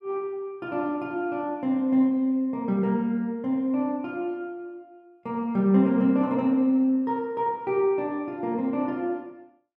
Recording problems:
none

